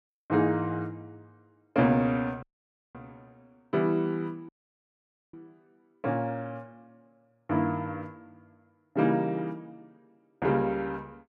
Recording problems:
dropout; at 2.5 s for 0.5 s and at 4.5 s for 1 s

